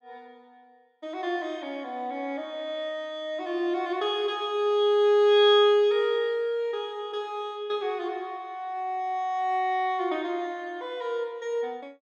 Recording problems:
none

